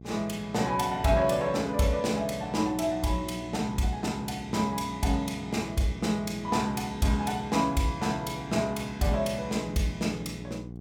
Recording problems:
electrical hum; 60 Hz, harmonics up to 780 Hz, SNR 15 dB

